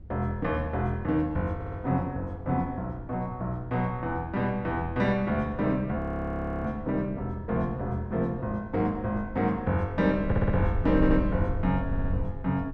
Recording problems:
wind on the microphone; below 90 Hz, SNR 11 dB
stutter; 4 times, first at 1.5 s
audio freezing; at 6 s for 0.5 s

